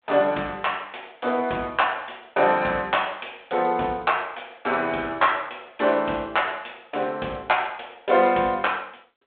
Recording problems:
telephone audio; 300 Hz to 3.5 kHz, G.726

